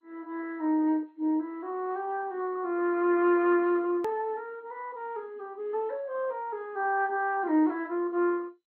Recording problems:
lossy compression; MP2, log-spectral distance 2 dB, nothing above 16.1 kHz
hard cut with a click; at 4 s

